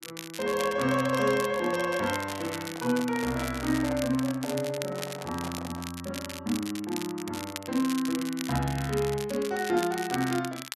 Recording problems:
crackle; vinyl, SNR 10 dB
microphone handling noise; from 2 to 6 s; peak -6 dB vs average level

